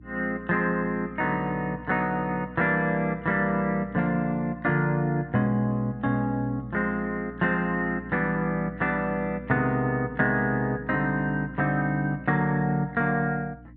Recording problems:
hum; 60 Hz, harmonics up to 300 Hz, SNR 20 dB

